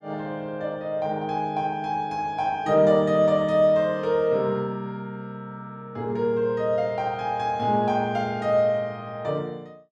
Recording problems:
none

